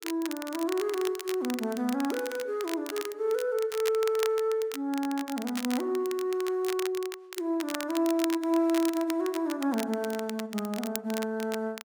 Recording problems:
crackling; vinyl, SNR 11 dB

